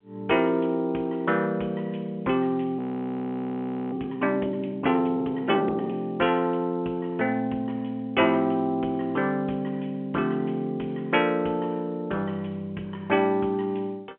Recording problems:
telephone audio; 280 Hz to 3.3 kHz, G.711
audio freezing; at 3 s for 1 s

